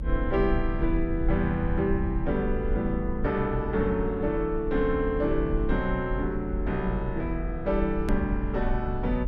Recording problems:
rumble; below 58 Hz, SNR 5 dB
click at an edit; at 8 s

